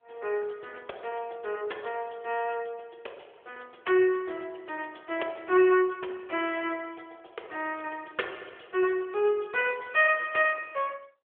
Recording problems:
phone line; 320 Hz to 3.3 kHz, AMR-NB

